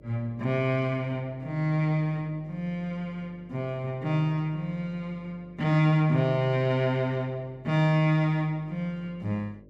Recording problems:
hum; 50 Hz, harmonics up to 600 Hz, SNR 25 dB

